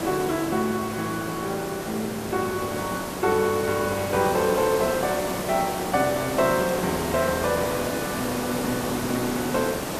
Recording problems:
background hiss; slope -6 dB per octave, SNR 4 dB

